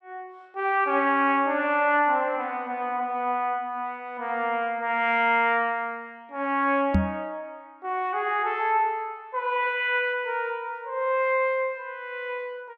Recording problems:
microphone bump; at 7 s; peak +6 dB vs average level

